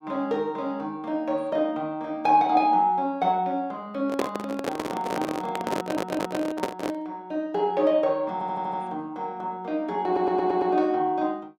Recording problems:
handling noise; from 4 to 7 s; peak +3 dB vs average level
audio stuttering; at 6 s, at 8.5 s and at 10 s

